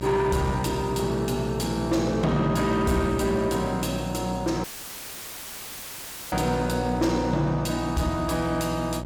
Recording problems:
distorted audio; soft clipping, signal-to-distortion ratio 11 dB
electrical hum; 60 Hz, harmonics up to 1.3 kHz, SNR 8 dB
dropout; at 4.5 s for 1.5 s; filled with static

